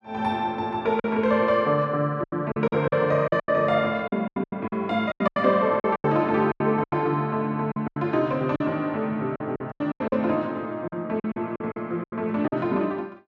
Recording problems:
lost packets; 14% of the sound replaced, filled with silence

